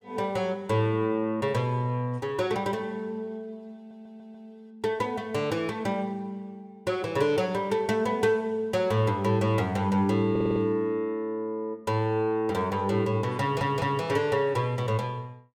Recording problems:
stutter; at 4 s, at 10 s and at 13 s

